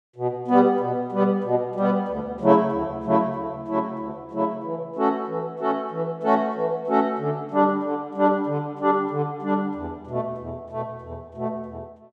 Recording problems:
none

